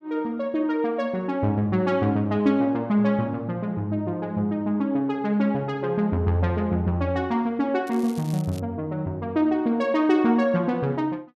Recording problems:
crackling; at 8 s; loose cable, SNR 22 dB

